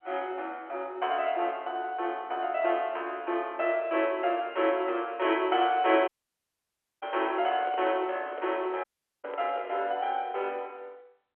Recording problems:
phone line; 300 Hz to 3.3 kHz, G.711
audio cutting out; at 6 s for 1 s and at 9 s
handling noise; from 7 to 10 s; peak -6 dB vs average level

